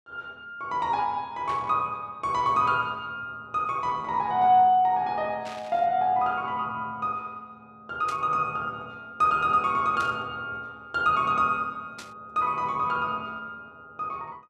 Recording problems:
static burst; 5 times, first at 1.5 s; peak -10 dB vs average level

